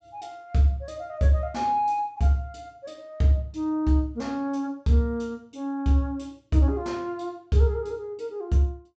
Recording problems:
treble cut off; nothing above 8 kHz

